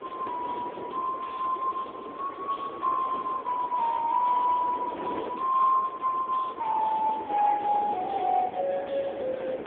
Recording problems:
telephone audio; 320 Hz to 3.5 kHz, AMR-NB
wind on the microphone; below 650 Hz, SNR 11 dB

